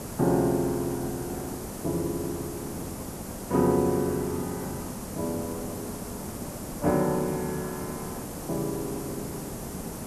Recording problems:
hiss; SNR 7 dB

